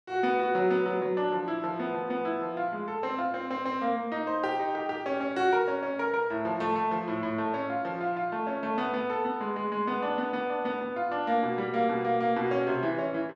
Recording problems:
none

